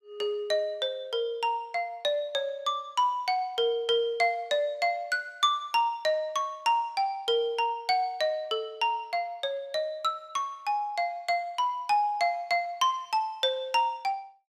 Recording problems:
none

